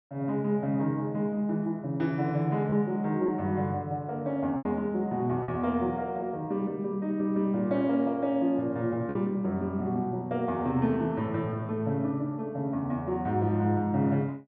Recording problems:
packet loss; 1.5% of the sound replaced, filled with repeated pitch periods

